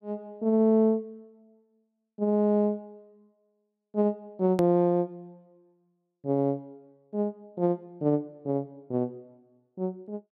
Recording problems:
click at an edit; at 4.5 s

